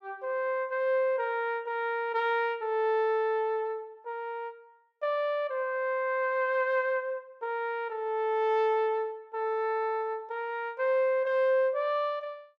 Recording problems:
none

